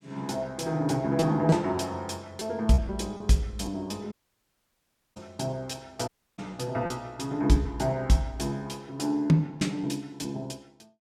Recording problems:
packet loss; 3% of the sound replaced, filled with repeated pitch periods
audio cutting out; at 4 s for 1 s and at 6 s

